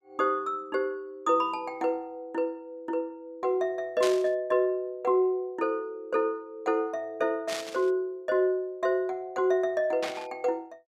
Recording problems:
static burst; at 4 s, at 7.5 s and at 10 s; peak -1 dB vs average level

